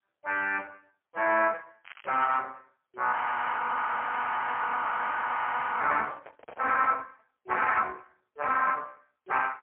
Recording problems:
telephone audio; 300 Hz to 3.2 kHz, AMR-NB, then MP3
crackle; at 2 s; loose cable, SNR 21 dB
audio freezing; at 3 s for 2.5 s
microphone handling noise; from 6 to 7 s; peak -7 dB vs average level

